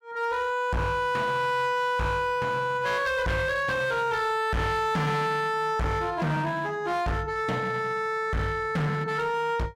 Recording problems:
distorted audio; hard clipping, uneven, signal-to-distortion ratio 8 dB

